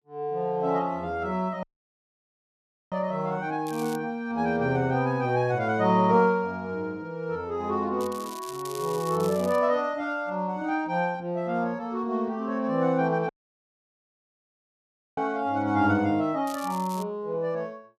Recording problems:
audio cutting out; at 1.5 s for 1.5 s and at 13 s for 2 s
crackling; at 3.5 s, from 8 to 9.5 s and at 16 s; loose cable, SNR 17 dB

